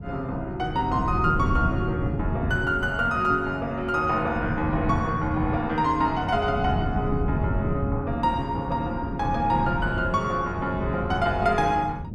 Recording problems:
wind noise; below 200 Hz, SNR 5 dB

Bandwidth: 13 kHz